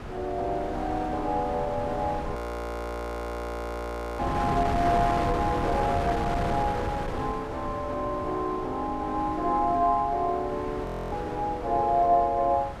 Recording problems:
wind on the microphone; below 900 Hz, SNR 6 dB
frozen audio; at 2.5 s for 2 s and at 11 s

